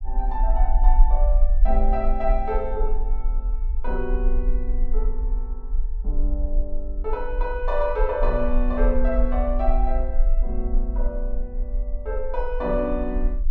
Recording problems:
rumble; below 40 Hz, strongest tone 26 Hz, SNR -2 dB

